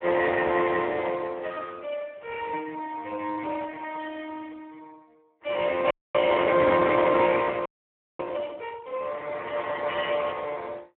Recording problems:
telephone audio; 300 Hz to 2 kHz, Speex
frozen audio; at 6 s and at 7.5 s for 0.5 s
burst of static; at 7.5 s and at 10 s; peak -13 dB vs average level

